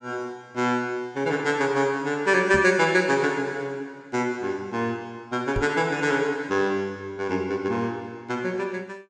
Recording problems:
microphone thump; at 2.5 s and at 5.5 s; peak -1 dB vs average level

